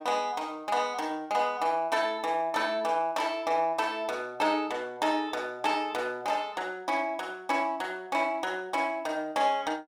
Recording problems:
none

